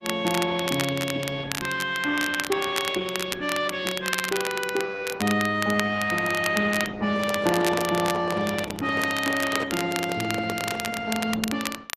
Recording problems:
lossy compression; Opus, log-spectral distance 5 dB
crackling; vinyl, SNR 7 dB
handling noise; from 7 to 11 s; peak -2 dB vs average level

